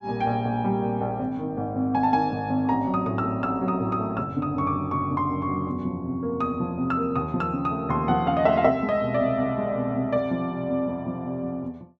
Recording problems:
none

